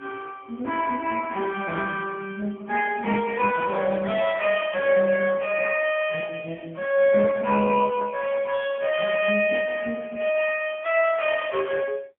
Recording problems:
phone line; 260 Hz to 3.1 kHz, AMR-NB, then MP3

